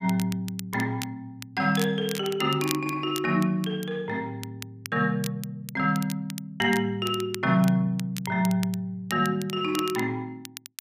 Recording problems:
crackling; vinyl, SNR 14 dB

